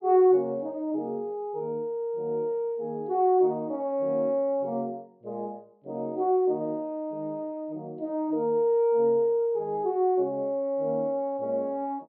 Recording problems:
low-pass filter; nothing above 5.5 kHz

